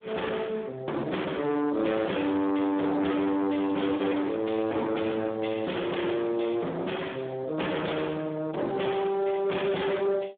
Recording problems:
phone line; 240 Hz to 3.4 kHz, Speex
distortion; soft clipping, signal-to-distortion ratio 9 dB
lost packets; 0.4% of the sound replaced, filled with the last packet

